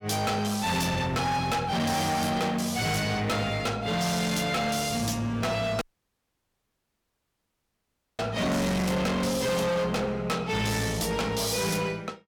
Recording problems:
distortion; hard clipping, uneven, signal-to-distortion ratio 6 dB
dropout; at 6 s for 2.5 s

